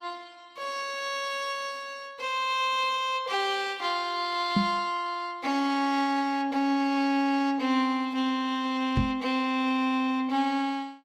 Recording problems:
lossy codec; Opus, log-spectral distance 2 dB
microphone thump; at 4.5 s and at 9 s; peak +6 dB vs average level

